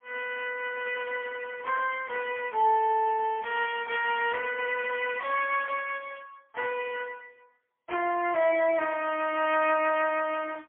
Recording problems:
telephone audio; 320 Hz to 3.1 kHz, AMR-NB, then MP3

